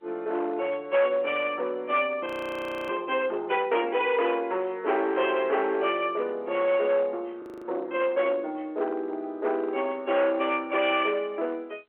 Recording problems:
telephone audio; 320 Hz to 3.3 kHz, G.711
distortion; hard clipping, uneven, signal-to-distortion ratio 12 dB
audio freezing; at 2.5 s for 0.5 s and at 7.5 s

